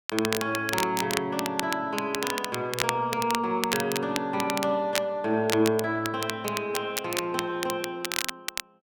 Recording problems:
crackling; vinyl, SNR 5 dB

